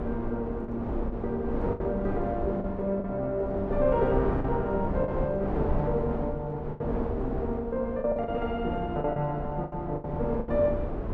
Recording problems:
wind on the microphone; below 420 Hz, SNR 4 dB
packet loss; 8% of the sound replaced, filled with the last packet

